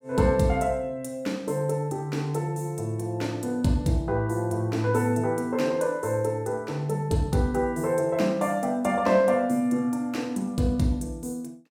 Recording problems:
none

